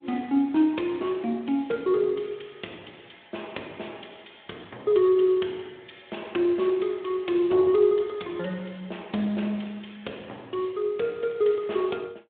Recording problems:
phone line; 240 Hz to 3.6 kHz, Speex

